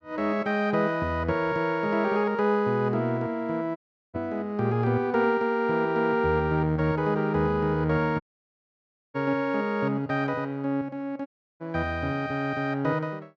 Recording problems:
audio cutting out; at 4 s, at 8 s for 1 s and at 11 s

